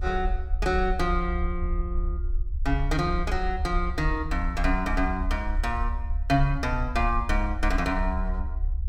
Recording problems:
rumble; below 66 Hz, strongest tone 34 Hz, SNR 2 dB

